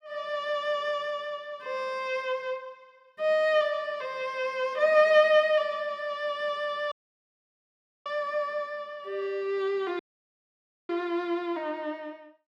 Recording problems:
dropout; at 7 s for 1 s and at 10 s for 1 s

